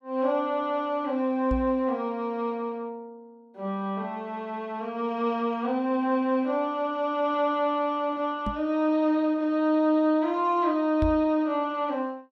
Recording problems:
microphone thump; at 1.5 s, at 8.5 s and at 11 s; peak +1 dB vs average level

